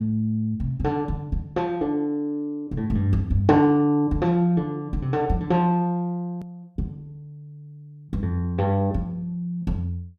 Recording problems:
click at an edit; at 6.5 s

